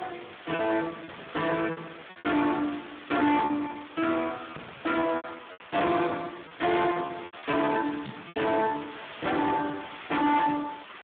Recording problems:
phone line; 170 Hz to 3.5 kHz, Speex
distortion; hard clipping, uneven, signal-to-distortion ratio 8 dB
hiss; SNR 16 dB
packet loss; 9% of the sound replaced, filled with repeated pitch periods

